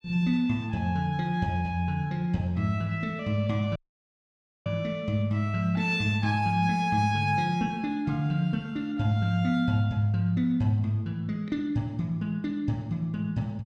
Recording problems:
audio cutting out; at 4 s for 1 s

